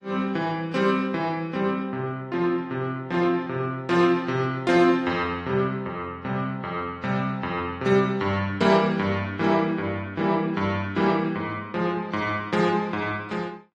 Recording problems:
codec artefacts; AAC, log-spectral distance 2 dB, nothing above 13.1 kHz

